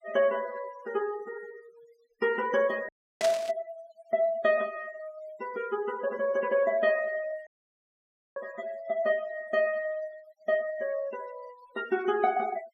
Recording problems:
denoising artefacts; signal-to-artefact ratio 20 dB
dropout; at 3 s and at 7.5 s for 1 s
burst of static; at 3 s; peak 0 dB vs average level

